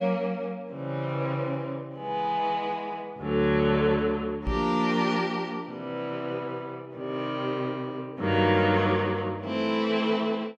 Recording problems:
microphone bump; at 4.5 s; peak 0 dB vs average level

